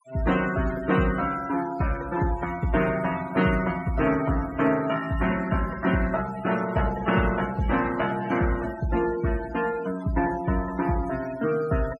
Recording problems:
noise reduction artefacts; signal-to-artefact ratio 14 dB

